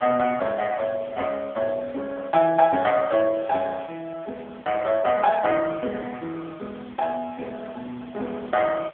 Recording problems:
telephone audio; 220 Hz to 2.5 kHz, AMR-NB
background hiss; SNR 27 dB

